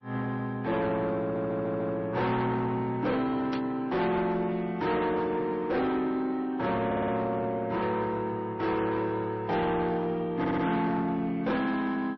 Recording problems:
codec artefacts; MP3, then MP3, log-spectral distance 2 dB
distortion; soft clipping, signal-to-distortion ratio 10 dB
stutter; at 1 s, at 7 s and at 10 s
static burst; at 3.5 s; peak -6 dB vs average level

